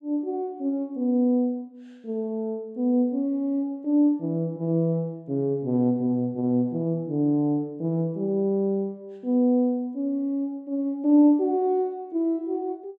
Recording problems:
none

